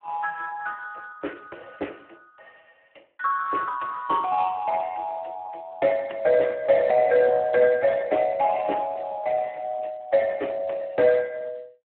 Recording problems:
telephone audio; 240 Hz to 2.7 kHz, Speex

